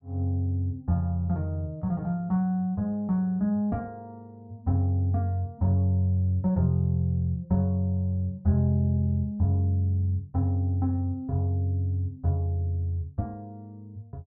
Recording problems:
none

